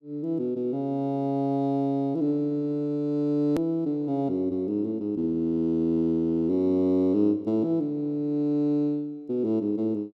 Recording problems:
edit click; at 3.5 s

